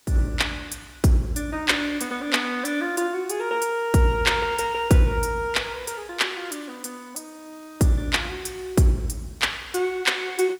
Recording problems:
hiss; slope 0 dB per octave, SNR 29 dB

